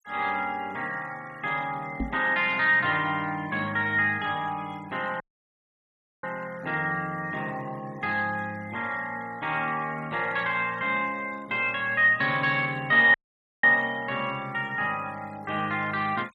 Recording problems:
denoising artefacts; signal-to-artefact ratio 24 dB
microphone bump; at 2 s; peak -1 dB vs average level
audio cutting out; at 5 s for 1 s and at 13 s

